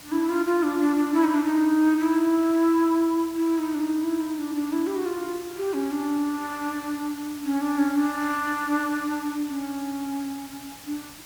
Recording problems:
background hiss; slope 0 dB per octave, SNR 18 dB

